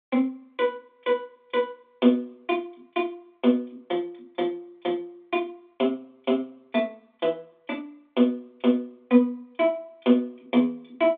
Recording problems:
telephone audio; 190 Hz to 3.6 kHz, G.726

